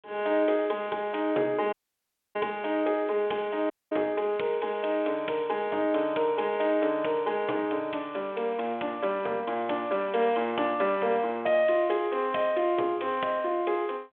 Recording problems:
telephone audio; 260 Hz to 3.4 kHz, G.726
dropout; at 1.5 s for 0.5 s and at 3.5 s

